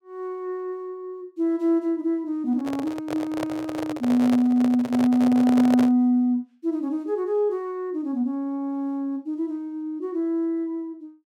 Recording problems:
microphone handling noise; from 2.5 to 6 s; peak 0 dB vs average level

